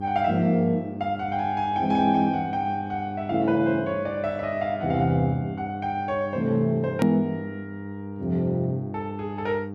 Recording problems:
mains hum; 50 Hz, harmonics up to 800 Hz, SNR 10 dB
hard cut with a click; at 7 s

